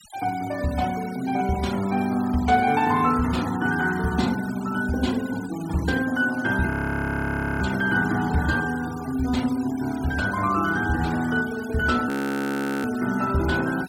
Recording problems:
denoising artefacts; signal-to-artefact ratio 17 dB
frozen audio; at 6.5 s for 1 s and at 12 s for 1 s

